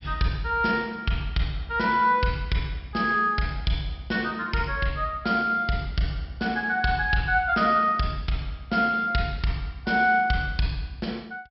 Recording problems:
treble cut off; nothing above 5.5 kHz

